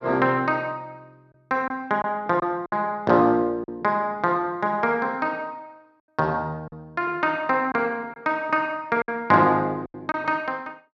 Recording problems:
packet loss; 4% of the sound replaced, filled with silence

